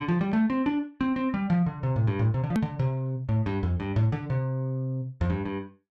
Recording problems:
edit click; at 2.5 s

